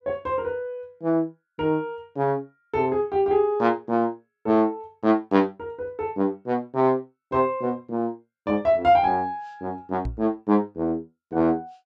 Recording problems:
microphone thump; at 10 s; peak -3 dB vs average level

